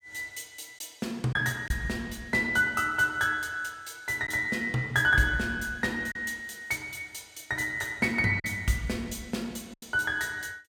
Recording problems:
packet loss; 1.9% of the sound replaced, filled with silence

